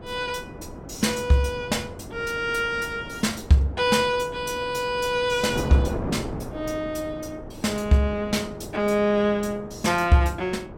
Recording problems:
wind on the microphone; below 530 Hz, SNR 12 dB

